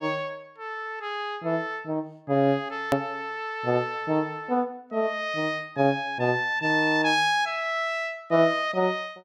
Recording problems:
hard cut with a click; at 3 s

